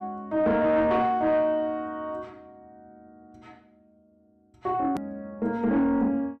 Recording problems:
distorted audio; soft clipping, signal-to-distortion ratio 11 dB
click at an edit; at 5 s

